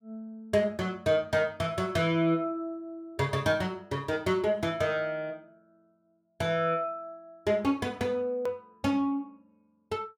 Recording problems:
hard cut with a click; at 8.5 s

